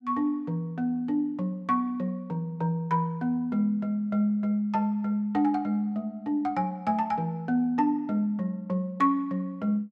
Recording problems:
none

